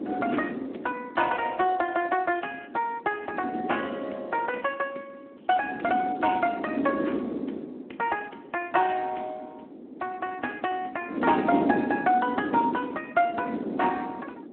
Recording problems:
phone line; 220 Hz to 3.3 kHz, Speex
wind on the microphone; below 400 Hz, SNR 3 dB

